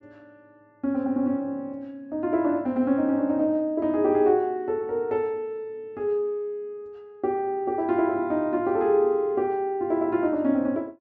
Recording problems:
low-pass filter; nothing above 7.6 kHz

